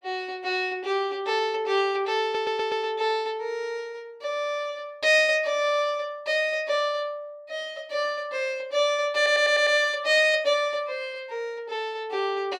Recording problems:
stutter; at 2 s and at 9 s

